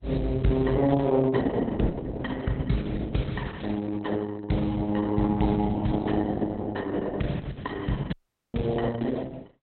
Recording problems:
lossy codec; Opus, log-spectral distance 3 dB, nothing above 4 kHz
audio cutting out; at 8 s

